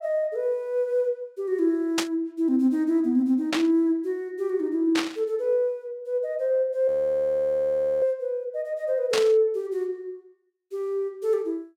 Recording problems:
burst of static; 4 times, first at 2 s; peak +4 dB vs average level
frozen audio; at 7 s for 1 s

